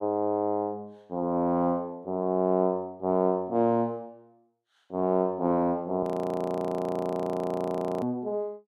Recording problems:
audio freezing; at 6 s for 2 s

